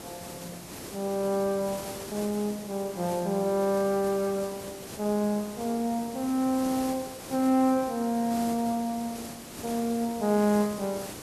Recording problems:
hiss; SNR 12 dB

